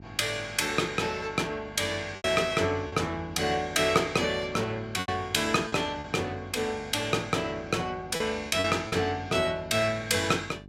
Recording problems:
hum; 50 Hz, harmonics up to 800 Hz, SNR 20 dB
lost packets; 4% of the sound replaced, filled with repeated pitch periods

